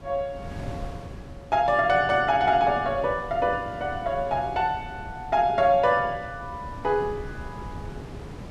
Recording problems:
wind noise; below 320 Hz, SNR 16 dB

